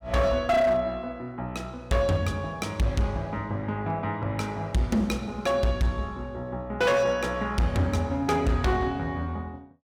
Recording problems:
distorted audio; hard clipping, signal-to-distortion ratio 11 dB

